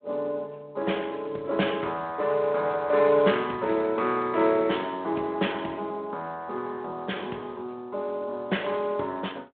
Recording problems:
phone line; 280 Hz to 3.5 kHz, Speex

